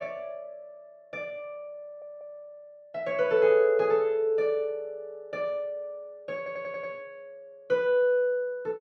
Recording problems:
stutter; at 2 s and at 6.5 s

